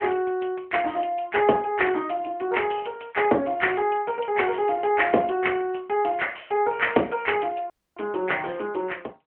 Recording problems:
phone line; 240 Hz to 3.2 kHz, AMR-NB
audio cutting out; at 7.5 s

